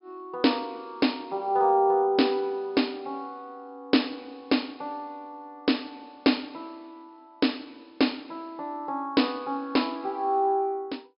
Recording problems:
treble cut off; nothing above 5.5 kHz

